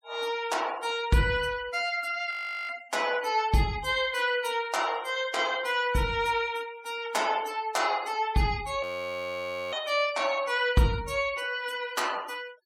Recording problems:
noise reduction artefacts; signal-to-artefact ratio 20 dB
audio freezing; at 2.5 s and at 9 s for 1 s

